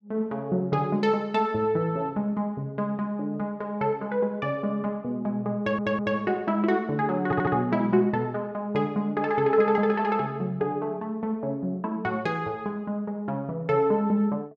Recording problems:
audio stuttering; at 5.5 s and at 7.5 s

